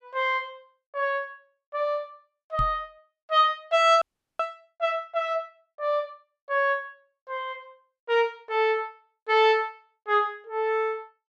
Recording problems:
microphone bump; at 2.5 s; peak -3 dB vs average level
frozen audio; at 4 s

